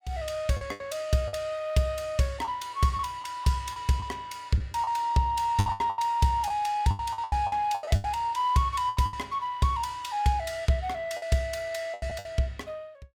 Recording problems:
packet loss; 11% of the sound replaced, filled with the last packet

